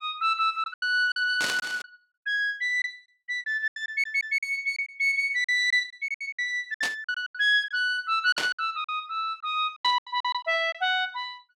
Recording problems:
lost packets; 12% of the sound replaced, filled with silence
static burst; 4 times, first at 1.5 s; peak +1 dB vs average level
audio stuttering; at 4 s

